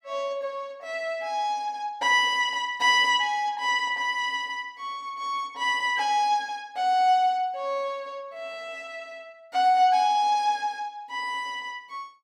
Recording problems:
none

